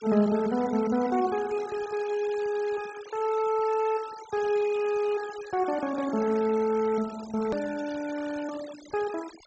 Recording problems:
treble missing; nothing above 8 kHz
denoising artefacts; signal-to-artefact ratio 17 dB
edit click; at 7.5 s

